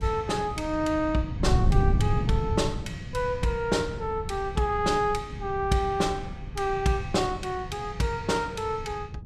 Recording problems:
wind noise; below 140 Hz, SNR 5 dB

